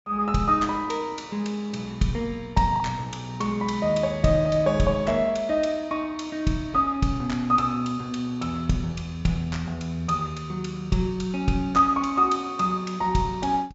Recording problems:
low-pass filter; nothing above 8 kHz
lost packets; 0.6% of the sound replaced, filled with the last packet

